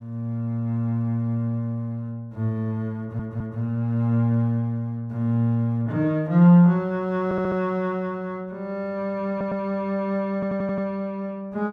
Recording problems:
audio stuttering; 4 times, first at 3 s

